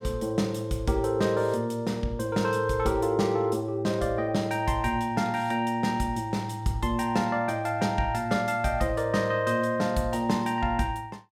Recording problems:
none

